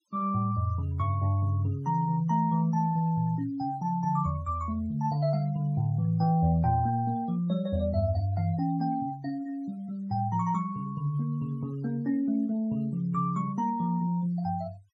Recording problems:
denoising artefacts; signal-to-artefact ratio 28 dB

